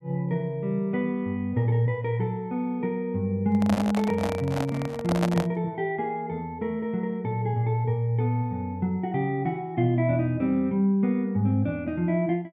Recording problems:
handling noise; from 3.5 to 5.5 s; peak +2 dB vs average level

